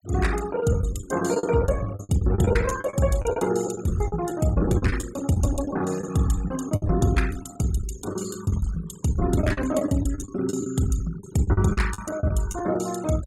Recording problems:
noise reduction artefacts; signal-to-artefact ratio 16 dB
lost packets; 17% of the sound replaced, filled with the last packet

